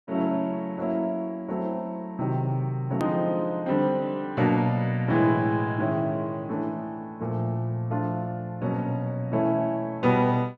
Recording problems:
hard cut with a click; at 3 s

